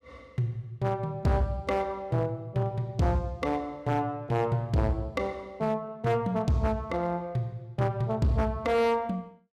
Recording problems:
distortion; hard clipping, signal-to-distortion ratio 12 dB

